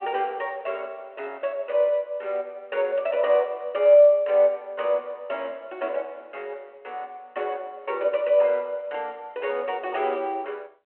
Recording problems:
telephone audio; 260 Hz to 3.3 kHz, G.726

